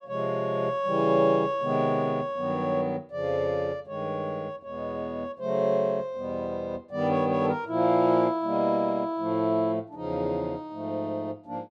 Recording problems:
none

